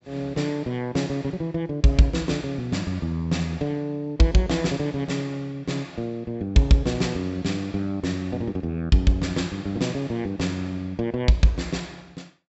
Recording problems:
treble missing; nothing above 7.6 kHz

